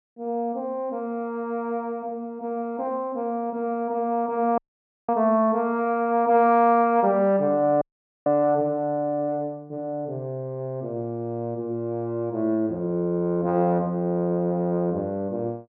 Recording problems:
dropout; at 4.5 s for 0.5 s and at 8 s

